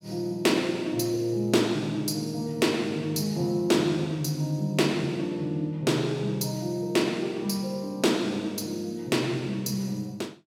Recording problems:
none

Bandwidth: 16 kHz